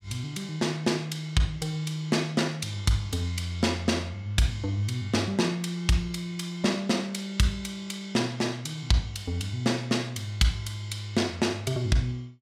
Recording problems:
none

